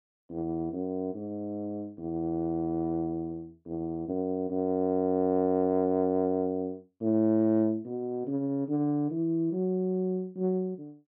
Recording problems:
none

